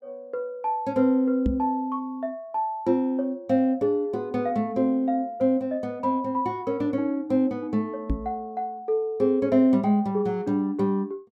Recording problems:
microphone thump; at 1.5 s and at 8 s; peak +3 dB vs average level

